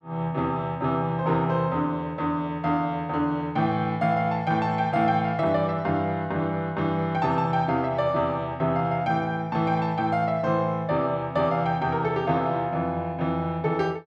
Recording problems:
none

